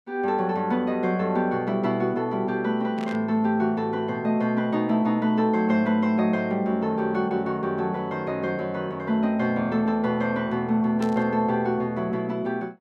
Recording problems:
burst of static; at 3 s and at 11 s; peak -11 dB vs average level

